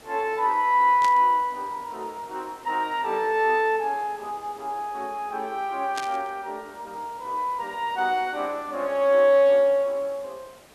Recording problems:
background hiss; slope -4 dB per octave, SNR 25 dB
burst of static; at 1 s and at 6 s; peak -6 dB vs average level

